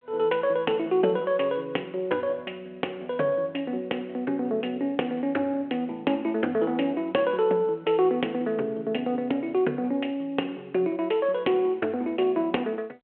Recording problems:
telephone audio; 300 Hz to 3.3 kHz, G.726

